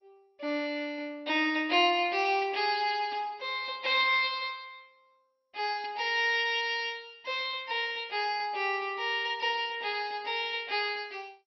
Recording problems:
lossy compression; MP2, log-spectral distance 3 dB

